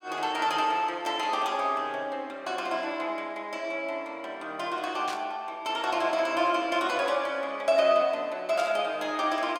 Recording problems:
burst of static; at 5 s and at 8.5 s; peak -6 dB vs average level

